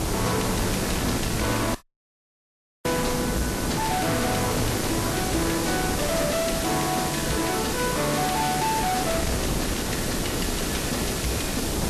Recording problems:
codec artefacts; Vorbis, log-spectral distance 10 dB, nothing above 13.8 kHz
distortion; soft clipping, signal-to-distortion ratio 8 dB
hiss; SNR 3 dB
wind noise; below 790 Hz, SNR 3 dB
dropout; at 2 s for 1 s

